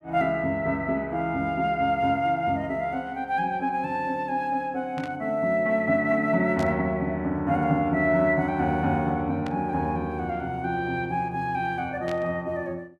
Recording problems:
burst of static; 4 times, first at 5 s; peak -10 dB vs average level

